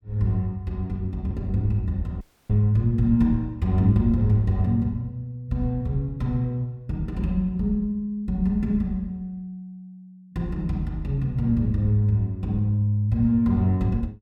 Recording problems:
dropout; at 2 s

